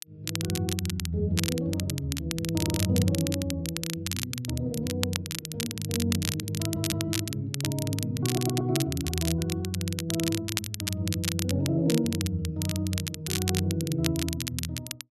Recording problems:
crackling; vinyl, SNR 4 dB
audio stuttering; at 2.5 s, at 6.5 s and at 8.5 s

